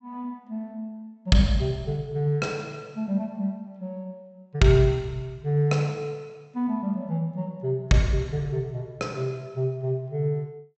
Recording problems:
treble cut off; nothing above 8 kHz

